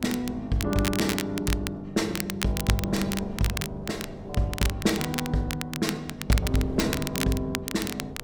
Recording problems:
wind on the microphone; below 410 Hz, SNR 14 dB
crackling; vinyl, SNR 6 dB

